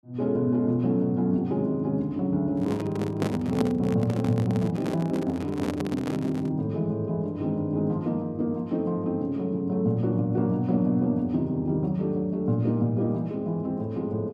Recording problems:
microphone handling noise; from 2.5 to 6.5 s; peak +2 dB vs average level

